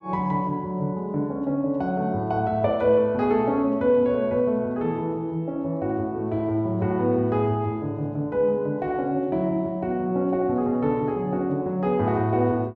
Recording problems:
none

